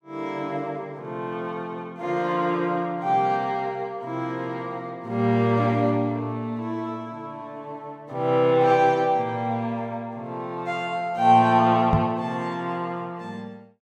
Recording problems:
knock on the microphone; at 12 s; peak +5 dB vs average level

